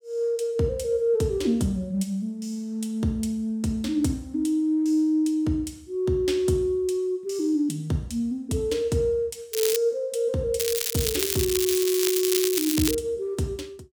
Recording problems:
crackle; at 9.5 s and from 11 to 13 s; loose cable, SNR 1 dB

